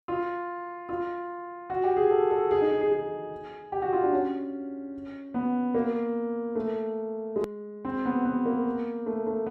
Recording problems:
edit click; at 7.5 s

